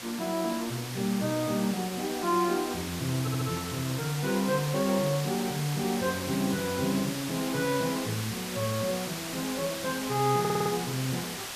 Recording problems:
background hiss; slope 0 dB per octave, SNR 6 dB
stutter; at 3 s and at 10 s

